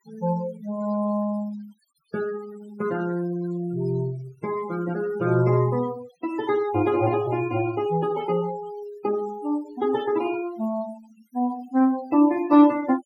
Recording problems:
noise reduction artefacts; signal-to-artefact ratio 19 dB

